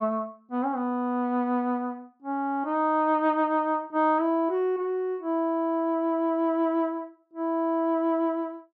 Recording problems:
none

